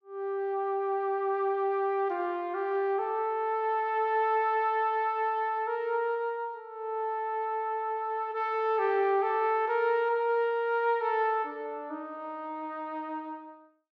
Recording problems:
none

